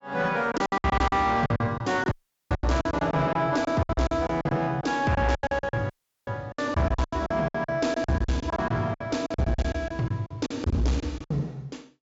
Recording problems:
treble missing; nothing above 8 kHz
distortion; soft clipping, signal-to-distortion ratio 10 dB
lost packets; 19% of the sound replaced, filled with silence
audio cutting out; at 2 s and at 6 s

